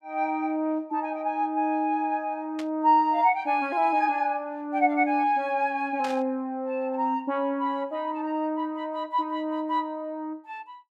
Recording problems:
burst of static; at 2.5 s and at 6 s; peak -8 dB vs average level

